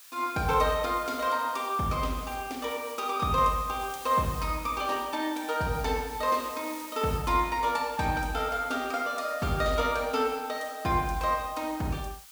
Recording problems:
hiss; SNR 16 dB

